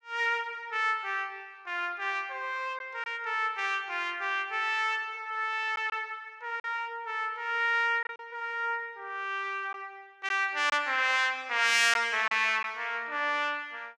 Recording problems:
packet loss; 1.9% of the sound replaced, filled with silence

